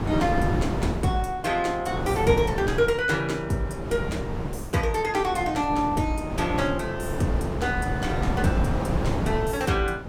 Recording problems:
wind noise; below 390 Hz, SNR 4 dB

